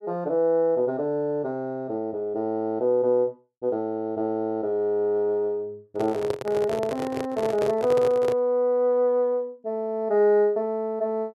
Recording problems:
microphone handling noise; from 6 to 8.5 s; peak 0 dB vs average level

